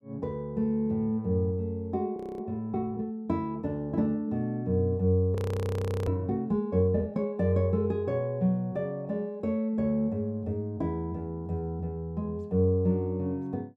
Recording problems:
audio freezing; at 2 s and at 5.5 s for 0.5 s

